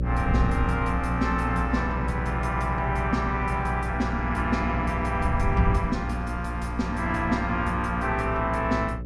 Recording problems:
hum; 60 Hz, harmonics up to 600 Hz, SNR 4 dB
wind noise; below 120 Hz, SNR 8 dB

